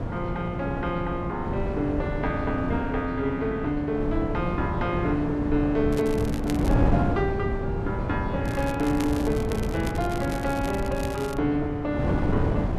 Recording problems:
wind on the microphone; below 320 Hz, SNR 2 dB
crackling; at 6 s and from 8.5 to 11 s; loose cable, SNR 15 dB

